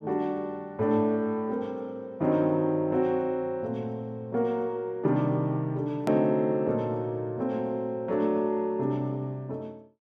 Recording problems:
edit click; at 6 s

